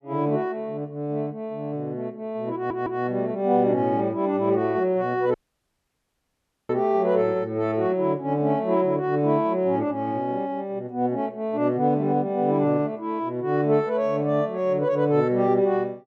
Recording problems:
stutter; at 2.5 s
audio cutting out; at 5.5 s for 1.5 s

